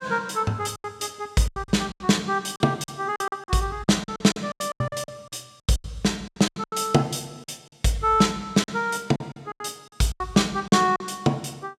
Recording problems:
lost packets; 15% of the sound replaced, filled with silence

